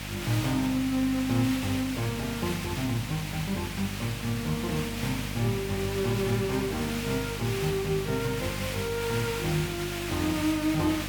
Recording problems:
hum; 50 Hz, harmonics up to 850 Hz, SNR 8 dB
background hiss; SNR 6 dB

